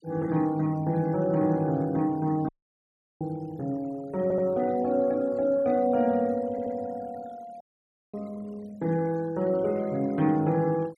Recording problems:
denoising artefacts; signal-to-artefact ratio 25 dB
audio cutting out; at 2.5 s for 0.5 s and at 7.5 s for 0.5 s
audio stuttering; at 4 s and at 6.5 s

